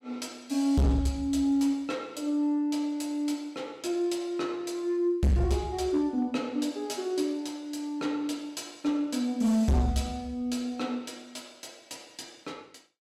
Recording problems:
distortion; hard clipping, uneven, signal-to-distortion ratio 6 dB

